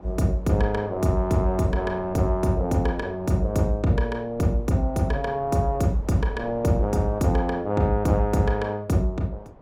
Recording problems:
wind noise; below 660 Hz, SNR 19 dB

